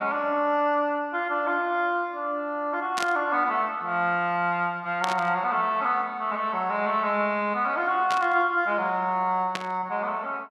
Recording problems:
static burst; 4 times, first at 3 s; peak -1 dB vs average level

